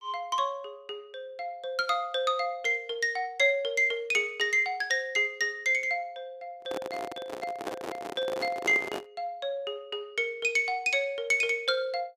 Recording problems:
handling noise; from 6.5 to 9 s; peak -2 dB vs average level

